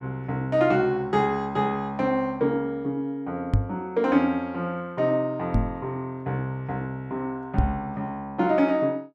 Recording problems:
knock on the microphone; at 3.5 s, at 5.5 s and at 7.5 s; peak +7 dB vs average level

